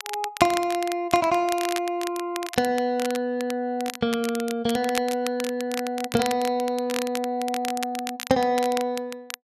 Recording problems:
crackling; vinyl, SNR 10 dB

